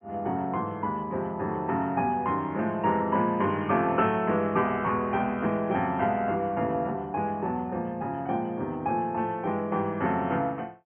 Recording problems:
low-pass filter; nothing above 3.2 kHz

